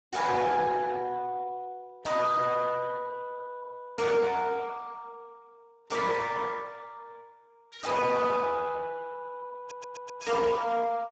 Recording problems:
lossy codec; Speex, log-spectral distance 4 dB, nothing above 7.6 kHz
distortion; soft clipping, signal-to-distortion ratio 5 dB
audio stuttering; at 9.5 s

